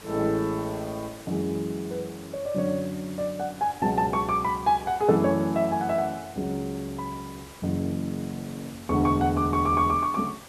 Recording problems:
hiss; slope -3 dB per octave, SNR 19 dB

